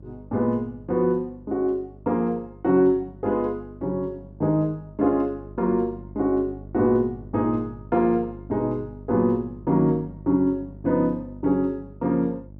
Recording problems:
hum; 50 Hz, harmonics up to 600 Hz, SNR 19 dB

